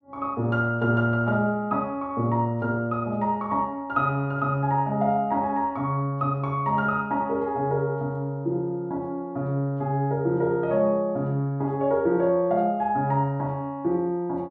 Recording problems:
none

